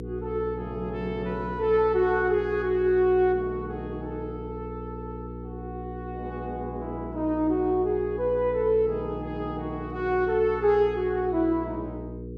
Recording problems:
hum; 60 Hz, harmonics up to 480 Hz, SNR 11 dB

